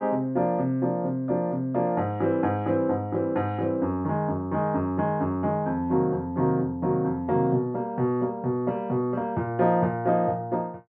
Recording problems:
none

